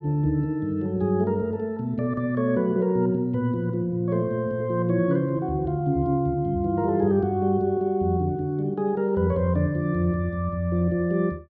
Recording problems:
none

